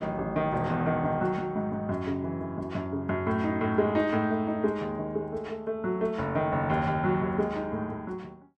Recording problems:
none

